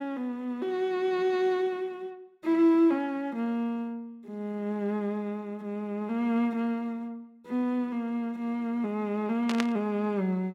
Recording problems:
static burst; at 9.5 s; peak +2 dB vs average level

